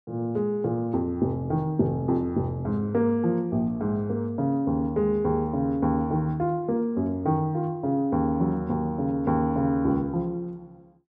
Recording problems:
none

